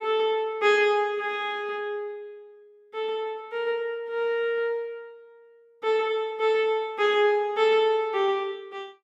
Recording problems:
none

